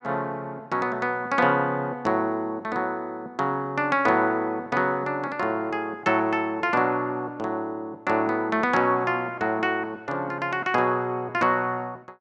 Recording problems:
none

